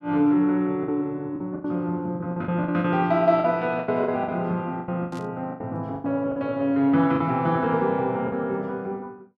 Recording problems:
packet loss; 11% of the sound replaced, filled with the last packet
burst of static; at 5 s; peak -17 dB vs average level

